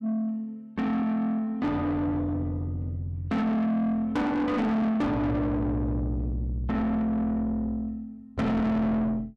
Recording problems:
distorted audio; soft clipping, signal-to-distortion ratio 8 dB

